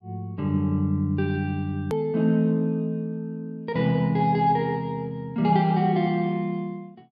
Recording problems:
edit click; at 2 s

